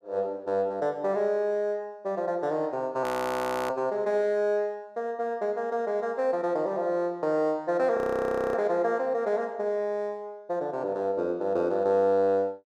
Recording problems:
frozen audio; at 3 s for 0.5 s and at 8 s for 0.5 s

